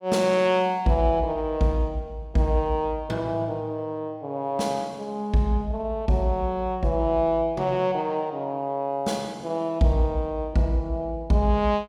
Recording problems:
none

